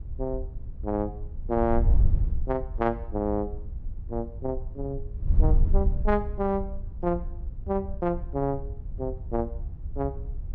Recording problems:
wind noise; below 66 Hz, SNR 1 dB

